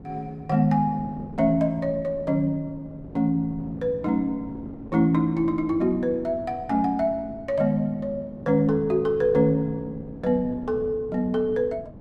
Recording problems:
wind noise; below 340 Hz, SNR 17 dB

